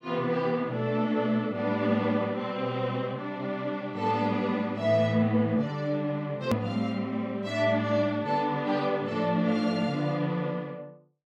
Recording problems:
edit click; at 6.5 s

